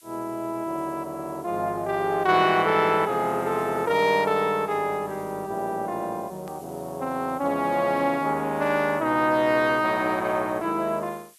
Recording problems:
background hiss; slope +5 dB per octave, SNR 26 dB
edit click; at 6.5 s

